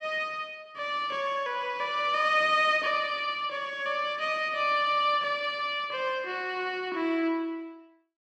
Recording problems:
none

